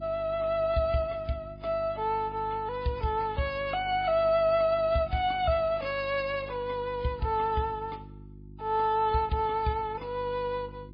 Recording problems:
codec artefacts; MP3, log-spectral distance 2 dB
hum; 50 Hz, harmonics up to 350 Hz, SNR 18 dB

